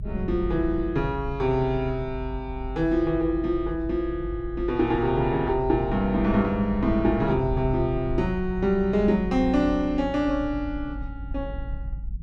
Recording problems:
low-frequency rumble; below 76 Hz, strongest tone 50 Hz, SNR 10 dB

